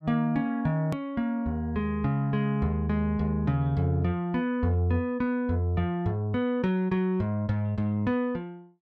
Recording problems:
edit click; at 1 s

